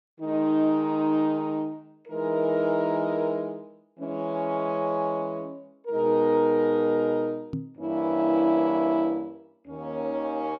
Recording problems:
microphone bump; at 7.5 s; peak -2 dB vs average level

